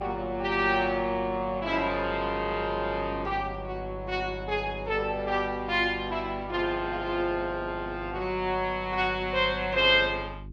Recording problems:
mains hum; 50 Hz, harmonics up to 400 Hz, SNR 15 dB

